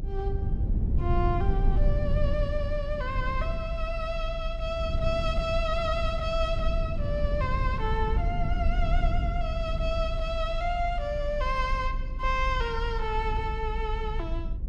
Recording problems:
rumble; below 78 Hz, SNR 0 dB

